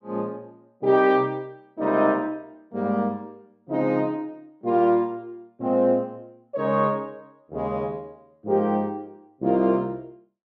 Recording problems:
none

